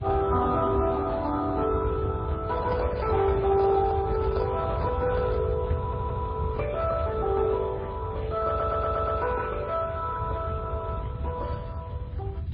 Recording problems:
lossy codec; Speex, then MP3, log-spectral distance 2 dB
low-frequency rumble; below 120 Hz, SNR 6 dB
microphone handling noise; from 2.5 to 5.5 s; peak -3 dB vs average level
audio stuttering; at 6 s and at 8.5 s

